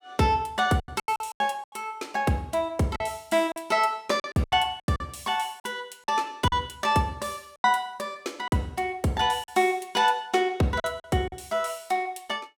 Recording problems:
packet loss; 9% of the sound replaced, filled with silence

